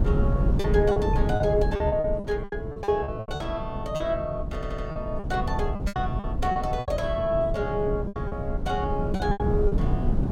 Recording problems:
wind noise; below 170 Hz, SNR 1 dB
lost packets; 13% of the sound replaced, filled with repeated pitch periods
stutter; at 4.5 s

